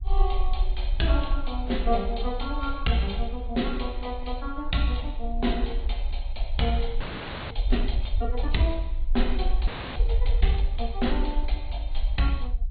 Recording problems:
treble missing; nothing above 4.2 kHz
lossy codec; AAC, log-spectral distance 2 dB
low-frequency rumble; below 48 Hz, SNR 1 dB
audio freezing; at 7 s for 0.5 s and at 9.5 s

